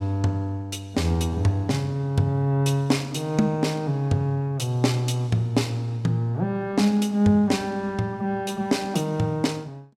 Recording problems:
none

